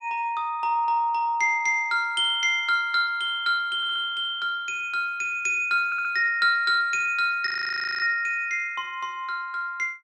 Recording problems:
stutter; at 4 s and at 6 s
audio freezing; at 7.5 s for 0.5 s

